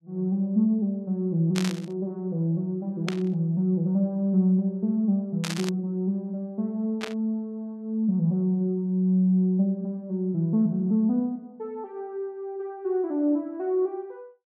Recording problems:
burst of static; 4 times, first at 1.5 s; peak -1 dB vs average level

